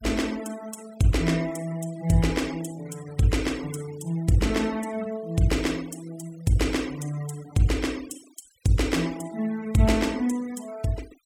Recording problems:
noise reduction artefacts; signal-to-artefact ratio 19 dB

